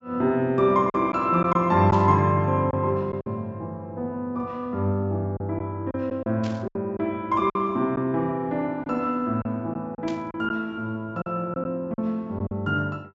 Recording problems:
treble missing; nothing above 8 kHz
lost packets; 6% of the sound replaced, filled with silence
burst of static; at 2 s, at 6.5 s and at 10 s; peak -11 dB vs average level

